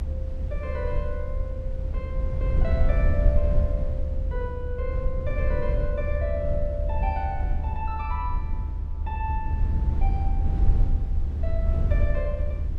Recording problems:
rumble; below 74 Hz, SNR -7 dB
wind noise; below 210 Hz, SNR 13 dB

